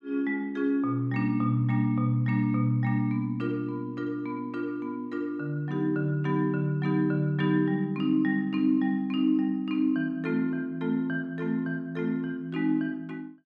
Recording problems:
none

